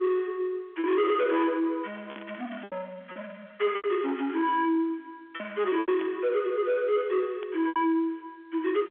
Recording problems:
telephone audio; 280 Hz to 3.6 kHz, G.711
distorted audio; soft clipping, signal-to-distortion ratio 11 dB
packet loss; 6% of the sound replaced, filled with repeated pitch periods
static burst; at 2 s, at 6 s and at 7.5 s; peak -11 dB vs average level

